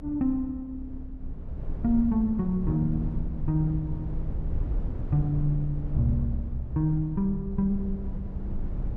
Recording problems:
rumble; below 86 Hz, SNR 7 dB

